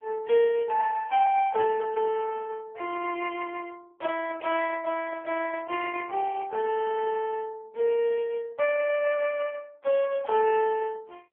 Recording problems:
telephone audio; 340 Hz to 2.9 kHz, AMR-NB

